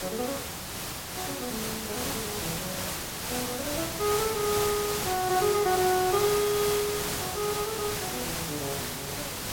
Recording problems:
hiss; slope -2 dB per octave, SNR 1 dB

